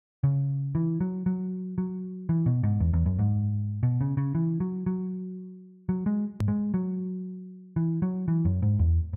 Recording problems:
edit click; at 6.5 s

